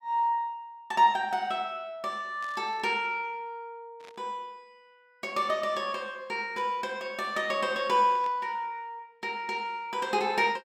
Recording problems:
static burst; 4 times, first at 2.5 s; peak -14 dB vs average level

